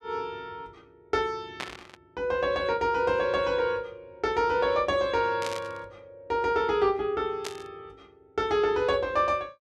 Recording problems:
burst of static; at 1.5 s, at 5.5 s and at 7.5 s; peak -4 dB vs average level

